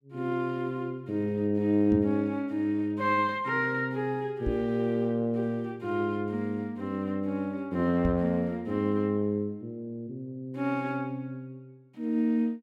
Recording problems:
knock on the microphone; at 2 s, at 4.5 s and at 8 s; peak +1 dB vs average level

